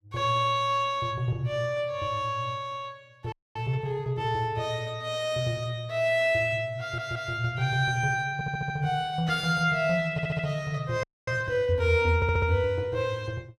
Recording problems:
frozen audio; at 3.5 s and at 11 s
stutter; 4 times, first at 7 s

